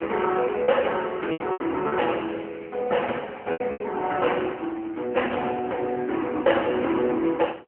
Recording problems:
telephone audio; 260 Hz to 3.2 kHz, AMR-NB
lost packets; 5% of the sound replaced, filled with repeated pitch periods

